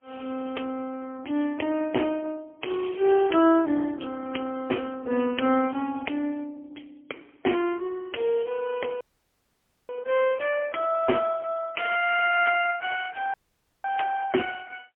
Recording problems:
telephone audio; 240 Hz to 3.2 kHz, AMR-NB, then MP3
dropout; at 9 s for 1 s and at 13 s for 0.5 s

